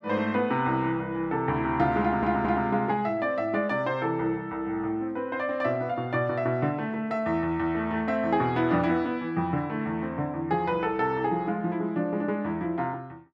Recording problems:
audio stuttering; at 2 s

